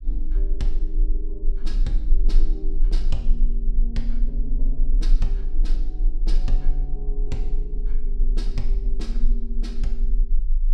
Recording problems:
rumble; below 32 Hz, strongest tone 20 Hz, SNR -11 dB

